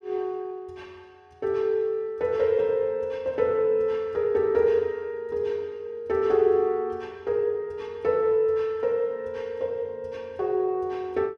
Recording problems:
none

